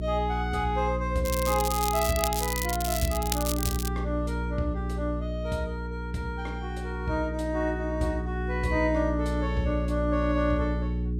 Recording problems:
mains hum; 60 Hz, harmonics up to 420 Hz, SNR 2 dB
crackling; from 1 to 4 s; loose cable, SNR 3 dB

